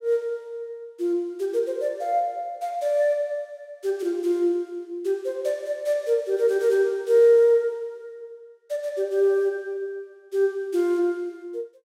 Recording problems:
none

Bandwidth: 16 kHz